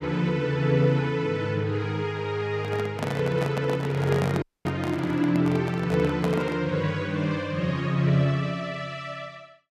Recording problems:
microphone handling noise; from 2.5 to 6.5 s; peak 0 dB vs average level
dropout; at 4.5 s

